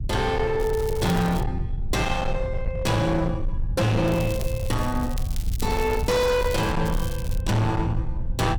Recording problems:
distorted audio; hard clipping, signal-to-distortion ratio 8 dB
low-frequency rumble; below 100 Hz, SNR 5 dB
crackling; at 0.5 s, from 4 to 6.5 s and at 7 s; loose cable, SNR 16 dB

